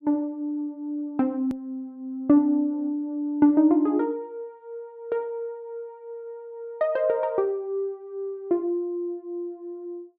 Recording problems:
hard cut with a click; at 1.5 s

